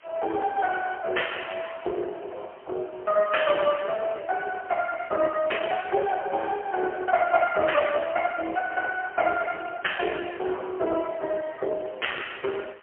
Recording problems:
phone line; 320 Hz to 3.2 kHz, AMR-NB, then MP3
background hiss; SNR 27 dB

